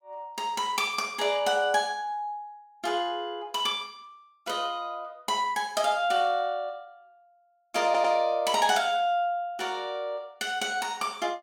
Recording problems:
stutter; at 8 s

